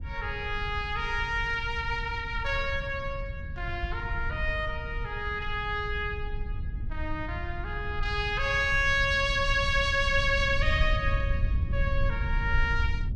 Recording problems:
rumble; below 82 Hz, SNR 5 dB

